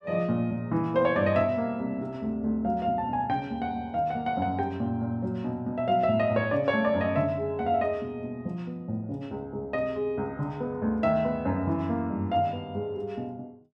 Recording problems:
none

